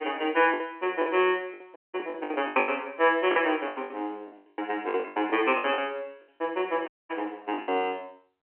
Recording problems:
telephone audio; 260 Hz to 3.1 kHz, G.711
packet loss; 16% of the sound replaced, filled with the last packet
dropout; at 2 s and at 7 s

